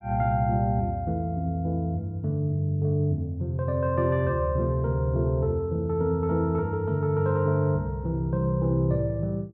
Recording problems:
none

